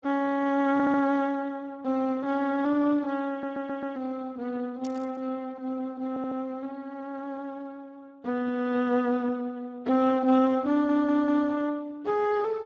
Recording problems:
lossy compression; Speex, log-spectral distance 2 dB
stutter; 4 times, first at 0.5 s
burst of static; at 5 s; peak -12 dB vs average level

